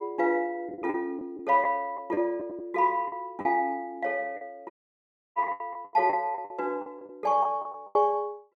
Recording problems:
packet loss; 12% of the sound replaced, filled with the last packet
audio cutting out; at 4.5 s for 0.5 s

